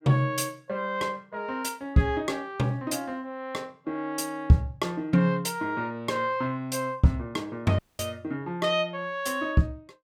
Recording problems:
audio cutting out; at 8 s

